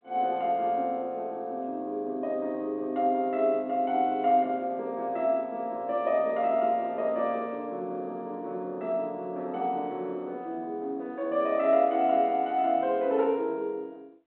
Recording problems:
telephone audio; 220 Hz to 3.5 kHz, G.726

